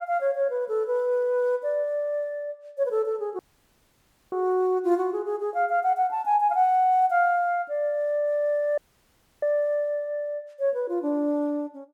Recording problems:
audio cutting out; at 3.5 s for 1 s and at 9 s for 0.5 s

